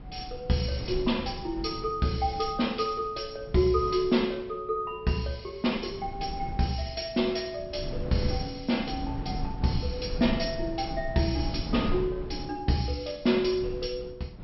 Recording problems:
treble missing; nothing above 5.5 kHz
wind noise; below 200 Hz, SNR 9 dB

